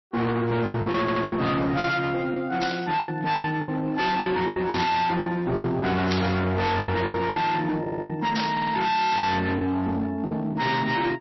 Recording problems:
codec artefacts; MP3, log-spectral distance 3 dB, nothing above 5.7 kHz
distortion; hard clipping, uneven, signal-to-distortion ratio 6 dB
packet loss; 12% of the sound replaced, filled with the last packet
audio stuttering; at 1 s, at 8 s and at 8.5 s
burst of static; 4 times, first at 2.5 s; peak 0 dB vs average level

